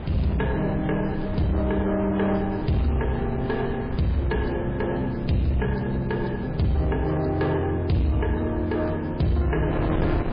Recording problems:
lossy codec; MP3, log-spectral distance 4 dB
distortion; soft clipping, signal-to-distortion ratio 11 dB
wind noise; below 350 Hz, SNR 8 dB

